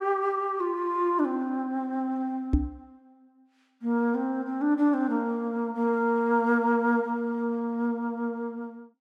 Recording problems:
microphone bump; at 2.5 s; peak +7 dB vs average level

